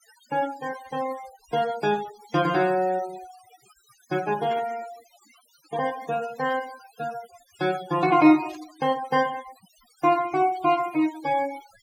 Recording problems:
denoising artefacts; signal-to-artefact ratio 17 dB
static burst; at 4.5 s, at 6.5 s and at 8.5 s; peak -15 dB vs average level

